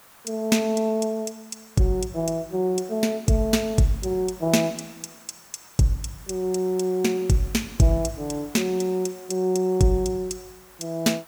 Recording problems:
background hiss; SNR 23 dB

